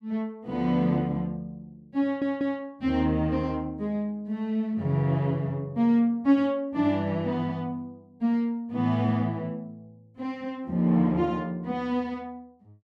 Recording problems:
audio stuttering; at 2 s

